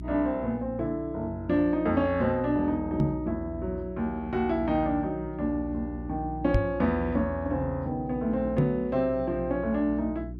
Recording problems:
hum; 60 Hz, harmonics up to 360 Hz, SNR 12 dB
microphone thump; at 3 s, at 6.5 s and at 8.5 s; peak +6 dB vs average level

